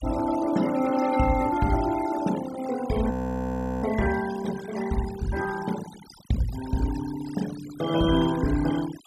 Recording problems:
denoising artefacts; signal-to-artefact ratio 14 dB
frozen audio; at 3 s for 0.5 s

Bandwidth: 14 kHz